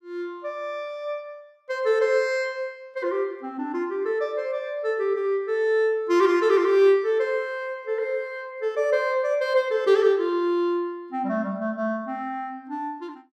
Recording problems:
none

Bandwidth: 14 kHz